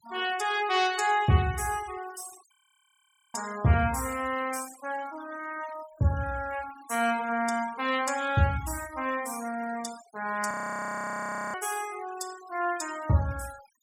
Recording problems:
denoising artefacts; signal-to-artefact ratio 16 dB
frozen audio; at 2.5 s for 1 s and at 11 s for 1 s

